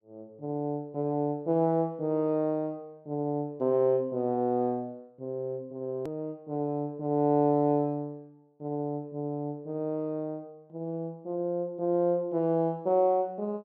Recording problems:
hard cut with a click; at 6 s

